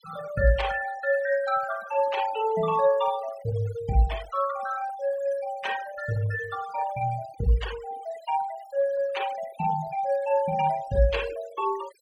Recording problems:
denoising artefacts; signal-to-artefact ratio 17 dB

